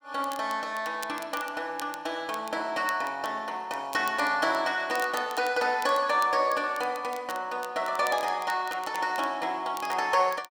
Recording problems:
crackling; vinyl, SNR 18 dB

